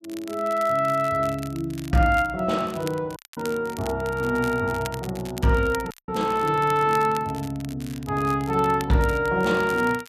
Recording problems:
crackle; vinyl, SNR 19 dB
audio cutting out; at 3 s and at 6 s

